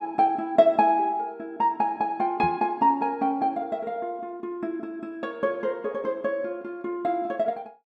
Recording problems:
microphone thump; at 2.5 s; peak -3 dB vs average level

